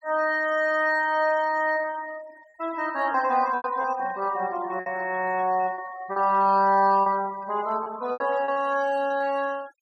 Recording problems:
denoising artefacts; signal-to-artefact ratio 22 dB
packet loss; 5% of the sound replaced, filled with repeated pitch periods

